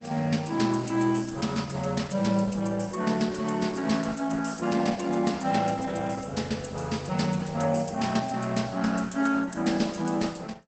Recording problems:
lossy codec; Opus, log-spectral distance 5 dB, nothing above 8 kHz

